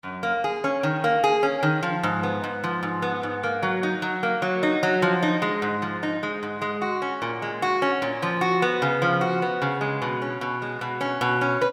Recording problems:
none

